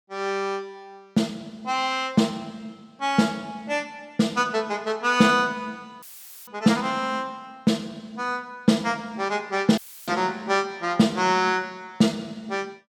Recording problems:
audio cutting out; at 6 s and at 10 s; filled with static

